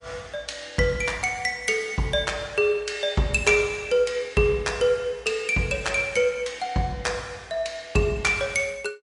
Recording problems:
codec artefacts; MP3, log-spectral distance 3 dB, nothing above 11 kHz

